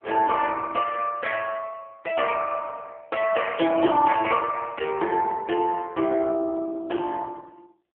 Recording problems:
phone line; 300 Hz to 2.8 kHz, AMR-NB

